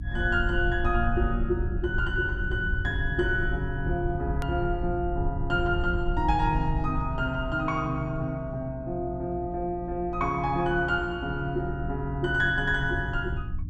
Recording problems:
electrical hum; 60 Hz, harmonics up to 300 Hz, SNR 12 dB
rumble; below 86 Hz, SNR 6 dB
click at an edit; at 4.5 s

